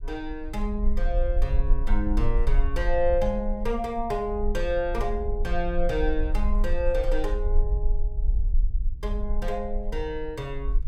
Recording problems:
low-frequency rumble; below 44 Hz, strongest tone 24 Hz, SNR 0 dB

